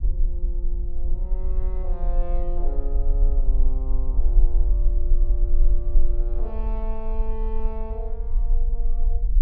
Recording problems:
rumble; below 38 Hz, strongest tone 18 Hz, SNR -13 dB

